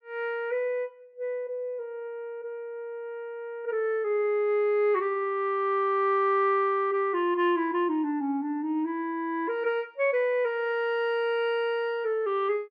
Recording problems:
none

